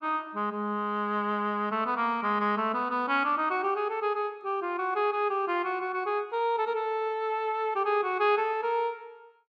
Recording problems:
none

